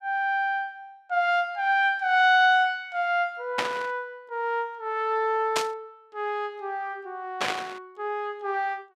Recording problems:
static burst; at 3.5 s, at 5.5 s and at 7.5 s; peak +3 dB vs average level

